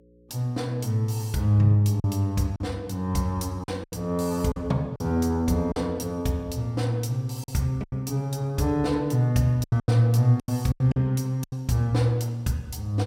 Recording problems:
hum; 60 Hz, harmonics up to 540 Hz, SNR 31 dB
packet loss; 7% of the sound replaced, filled with silence

